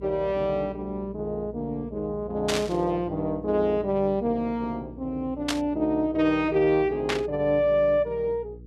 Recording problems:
electrical hum; 60 Hz, harmonics up to 480 Hz, SNR 19 dB
static burst; at 2.5 s, at 5.5 s and at 7 s; peak +2 dB vs average level

